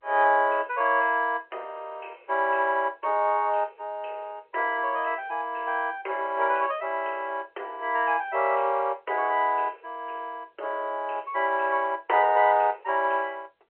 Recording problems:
phone line; 340 Hz to 3.3 kHz, G.711

